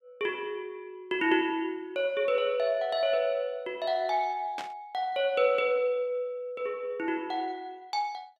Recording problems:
static burst; at 4.5 s; peak -6 dB vs average level

